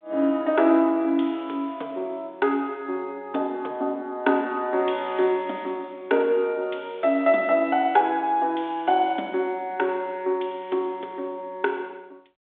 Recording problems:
phone line; 240 Hz to 3.8 kHz, G.726

